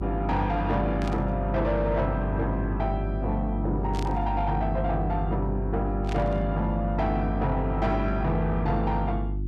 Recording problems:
distortion; soft clipping, signal-to-distortion ratio 12 dB
mains hum; 50 Hz, harmonics up to 350 Hz, SNR 3 dB
burst of static; at 1 s, at 4 s and at 6 s; peak -7 dB vs average level

